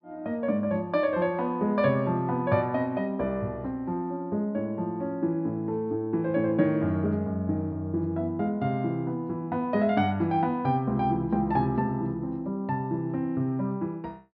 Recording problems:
low-pass filter; nothing above 5.5 kHz

